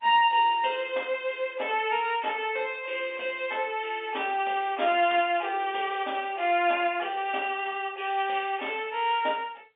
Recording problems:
phone line; 340 Hz to 3.6 kHz, G.711

